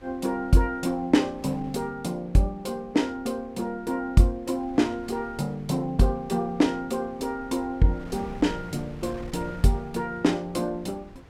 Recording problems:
wind noise; below 330 Hz, SNR 20 dB

